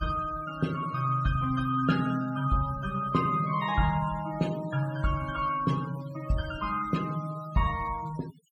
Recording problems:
noise reduction artefacts; signal-to-artefact ratio 18 dB

